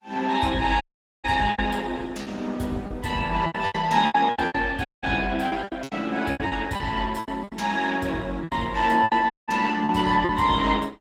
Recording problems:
lossy compression; Opus, log-spectral distance 4 dB
packet loss; 13% of the sound replaced, filled with repeated pitch periods
audio cutting out; at 1 s, at 5 s and at 9.5 s

